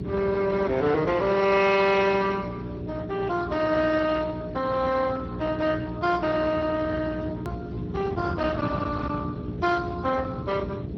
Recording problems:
lossy codec; MP2, then Speex, log-spectral distance 3 dB
distortion; hard clipping, uneven, signal-to-distortion ratio 12 dB
electrical hum; 60 Hz, harmonics up to 420 Hz, SNR 10 dB
rumble; below 310 Hz, SNR 12 dB
hard cut with a click; at 7.5 s

